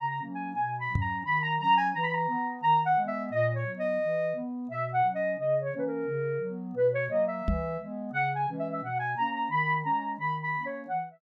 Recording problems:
microphone bump; at 1 s and at 7.5 s; peak +4 dB vs average level

